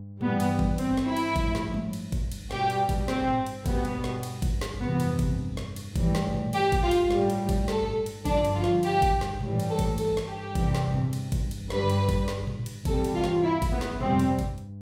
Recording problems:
hum; 50 Hz, harmonics up to 500 Hz, SNR 14 dB

